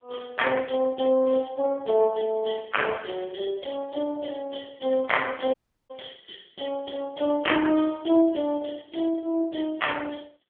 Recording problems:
telephone audio; 260 Hz to 3.3 kHz, AMR-NB
dropout; at 5.5 s

